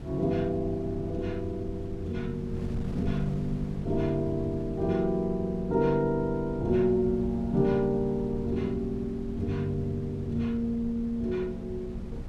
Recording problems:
wind noise; below 150 Hz, SNR 11 dB

